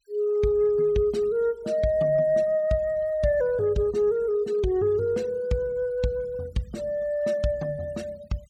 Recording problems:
noise reduction artefacts; signal-to-artefact ratio 27 dB

